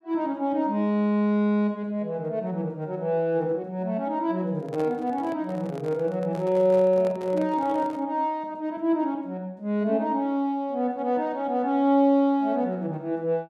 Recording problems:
handling noise; from 4.5 to 8 s; peak -9 dB vs average level

